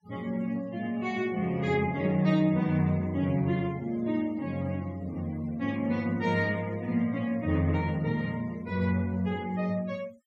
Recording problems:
noise reduction artefacts; signal-to-artefact ratio 24 dB

